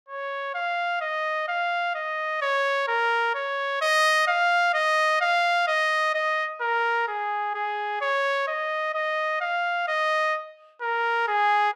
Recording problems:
none

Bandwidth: 15 kHz